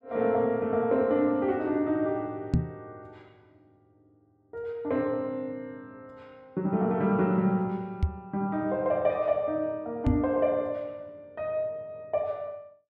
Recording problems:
microphone thump; at 2.5 s, at 8 s and at 10 s; peak +7 dB vs average level

